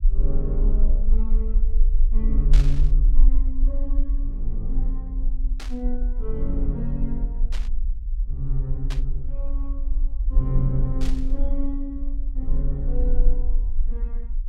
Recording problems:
low-frequency rumble; below 38 Hz, strongest tone 18 Hz, SNR -7 dB
burst of static; 5 times, first at 2.5 s; peak -1 dB vs average level

